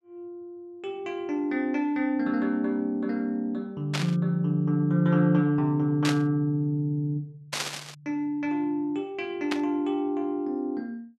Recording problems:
burst of static; 4 times, first at 4 s; peak +2 dB vs average level

